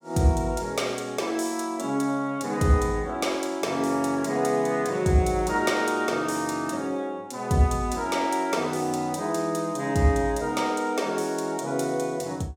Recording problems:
none

